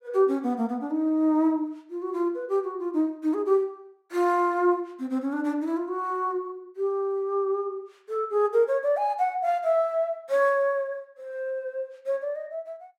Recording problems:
none

